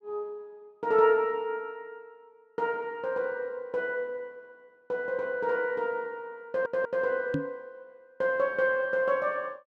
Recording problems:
stutter; at 6.5 s
knock on the microphone; at 7.5 s; peak +3 dB vs average level

